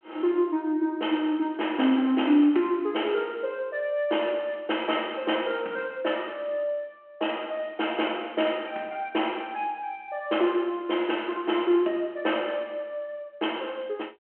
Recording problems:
telephone audio; 240 Hz to 3.2 kHz, G.726

